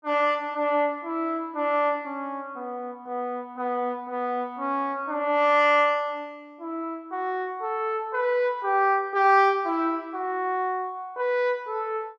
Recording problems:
none

